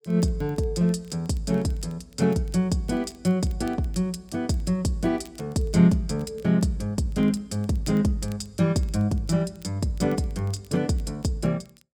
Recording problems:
crackling; vinyl, SNR 30 dB

